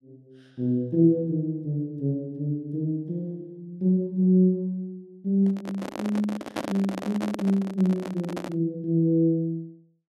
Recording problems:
microphone handling noise; from 5.5 to 8.5 s; peak -1 dB vs average level

